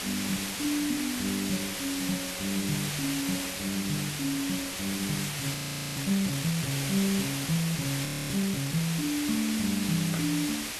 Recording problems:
hiss; slope 0 dB per octave, SNR 2 dB
audio freezing; at 5.5 s and at 8 s

